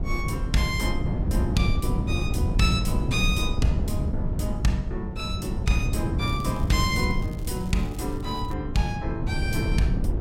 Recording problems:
wind noise; below 150 Hz, SNR 0 dB
crackling; from 6 to 8.5 s; loose cable, SNR 23 dB

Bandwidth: 16 kHz